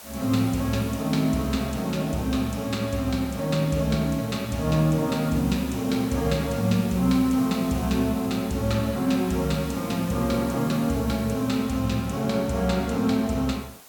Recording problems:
hiss; SNR 17 dB

